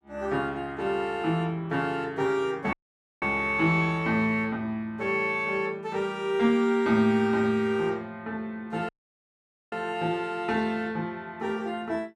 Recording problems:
dropout; at 2.5 s and at 9 s for 1 s

